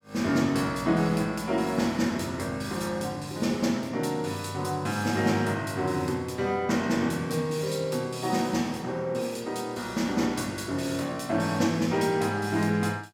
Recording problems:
none

